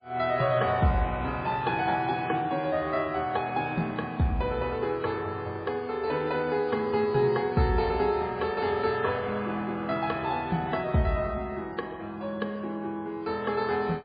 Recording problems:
lossy codec; MP3, log-spectral distance 2 dB, nothing above 4.6 kHz

